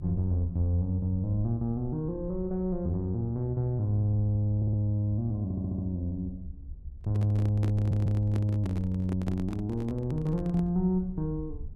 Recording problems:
rumble; below 76 Hz, SNR 15 dB
audio stuttering; at 4.5 s, at 5.5 s and at 8 s
handling noise; from 7 to 11 s; peak -4 dB vs average level

